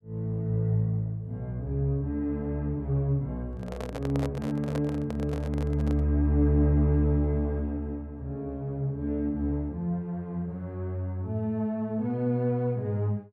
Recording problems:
handling noise; from 3.5 to 6 s; peak -4 dB vs average level

